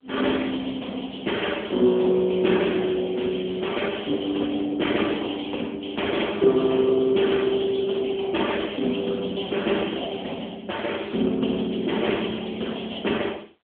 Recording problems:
telephone audio; 220 Hz to 3.6 kHz, AMR-NB

